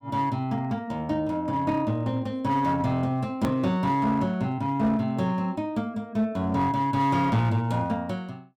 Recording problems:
distorted audio; hard clipping, uneven, signal-to-distortion ratio 11 dB
hard cut with a click; at 3.5 s

